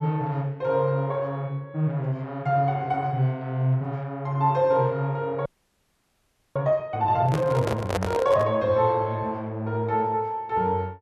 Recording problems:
audio freezing; at 5.5 s for 1 s
microphone handling noise; from 7 to 8.5 s; peak +3 dB vs average level

